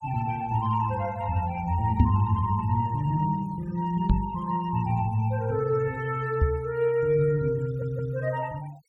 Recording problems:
denoising artefacts; signal-to-artefact ratio 25 dB
microphone thump; at 2 s, at 4 s and at 6.5 s; peak +9 dB vs average level
audio stuttering; at 7.5 s

